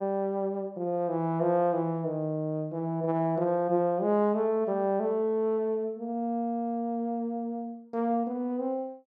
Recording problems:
none

